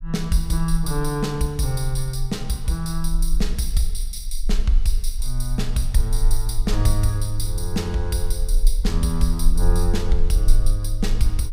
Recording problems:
rumble; below 36 Hz, strongest tone 20 Hz, SNR 2 dB

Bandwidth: 15.5 kHz